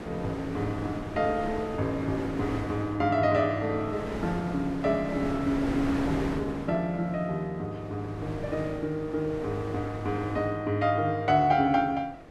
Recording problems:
wind noise; below 800 Hz, SNR 9 dB

